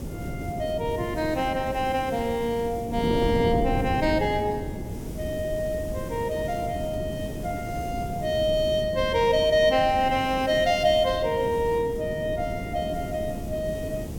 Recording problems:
hiss; slope +1 dB per octave, SNR 23 dB
wind on the microphone; below 320 Hz, SNR 8 dB

